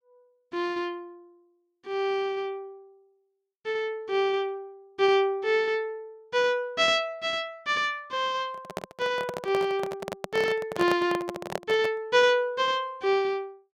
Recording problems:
microphone handling noise; from 8.5 to 12 s; peak 0 dB vs average level

